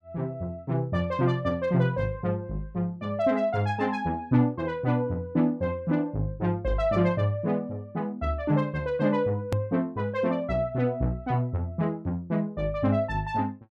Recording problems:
click at an edit; at 9.5 s

